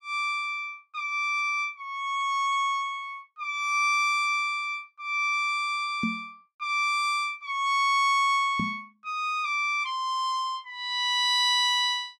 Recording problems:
microphone thump; at 6 s and at 8.5 s; peak 0 dB vs average level

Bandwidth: 14.5 kHz